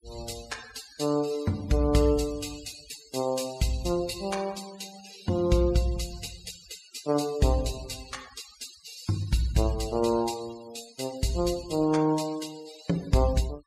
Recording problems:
noise reduction artefacts; signal-to-artefact ratio 16 dB

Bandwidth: 14.5 kHz